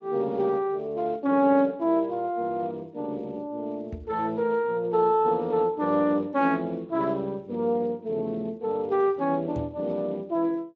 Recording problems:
lossy codec; Speex, log-spectral distance 2 dB
microphone bump; at 4 s and at 9.5 s; peak -6 dB vs average level

